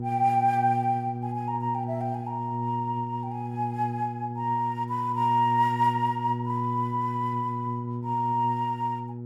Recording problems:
hum; 60 Hz, harmonics up to 480 Hz, SNR 6 dB

